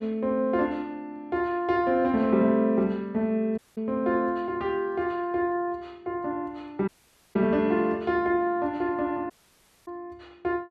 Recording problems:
dropout; at 3.5 s, at 7 s and at 9.5 s for 0.5 s

